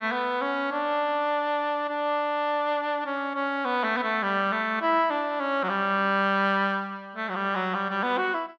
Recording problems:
none

